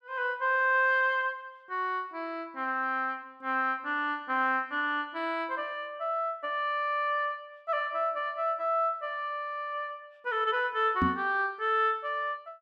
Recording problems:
knock on the microphone; at 11 s; peak +4 dB vs average level

